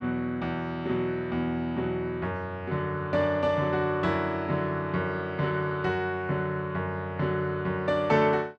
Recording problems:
none

